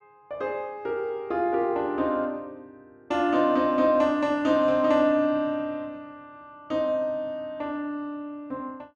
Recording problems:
none

